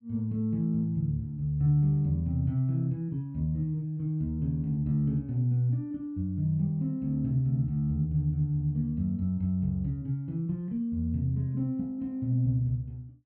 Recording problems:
none

